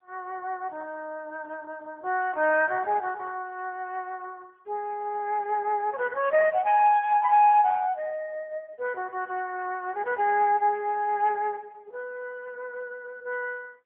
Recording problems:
telephone audio; 320 Hz to 3 kHz, AMR-NB

